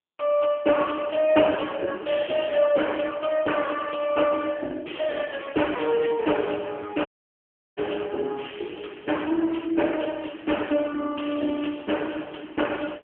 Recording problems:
telephone audio; 240 Hz to 3.3 kHz, AMR-NB
audio cutting out; at 7 s for 0.5 s

